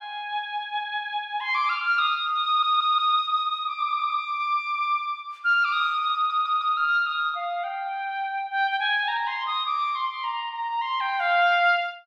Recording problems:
stutter; at 2.5 s, at 4 s and at 6 s

